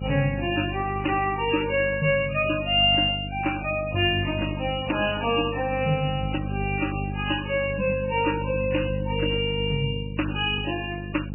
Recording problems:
lossy compression; MP3, then MP3, log-spectral distance 8 dB, nothing above 2.8 kHz
hum; 50 Hz, harmonics up to 550 Hz, SNR 7 dB

